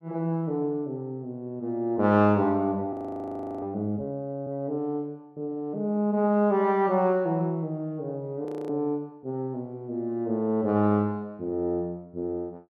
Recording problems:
audio freezing; at 3 s for 0.5 s and at 8.5 s

